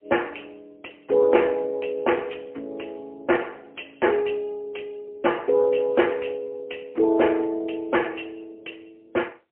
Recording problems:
phone line; 300 Hz to 3.1 kHz, AMR-NB, then MP3

